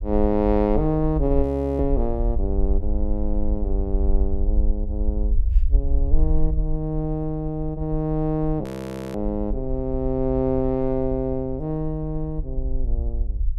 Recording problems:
rumble; below 54 Hz, SNR 2 dB
audio freezing; at 1.5 s and at 8.5 s for 0.5 s

